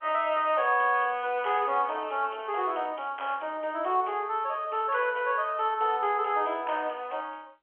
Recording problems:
telephone audio; 320 Hz to 3.3 kHz, G.711

